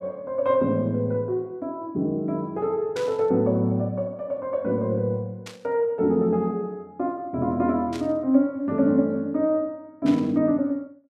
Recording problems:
burst of static; 4 times, first at 3 s; peak -8 dB vs average level

